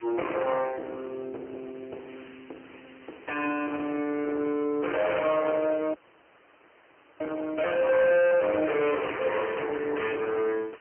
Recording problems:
phone line; 260 Hz to 3 kHz, AMR-NB, then MP3
distortion; soft clipping, signal-to-distortion ratio 9 dB
hiss; SNR 27 dB
dropout; at 6 s for 1.5 s

